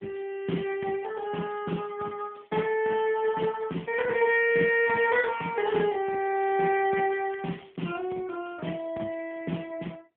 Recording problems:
telephone audio; 190 Hz to 3.3 kHz, AMR-NB
crackling; from 3 to 5.5 s and from 5.5 to 8 s; loose cable, SNR 28 dB

